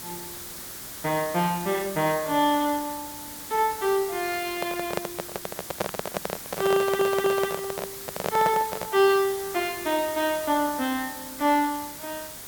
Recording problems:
background hiss; SNR 11 dB
microphone handling noise; from 4.5 to 9 s; peak +2 dB vs average level
audio stuttering; at 7 s

